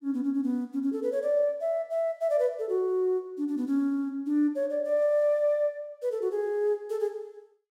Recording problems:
none

